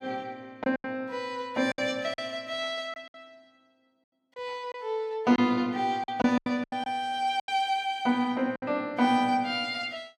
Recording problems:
packet loss; 8% of the sound replaced, filled with silence

